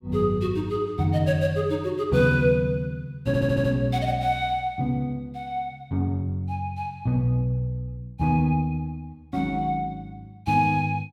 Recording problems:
audio stuttering; at 3.5 s

